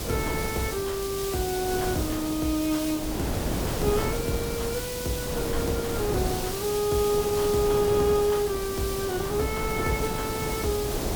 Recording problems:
hum; 50 Hz, harmonics up to 500 Hz, SNR 18 dB
hiss; SNR 7 dB
wind on the microphone; below 560 Hz, SNR 5 dB

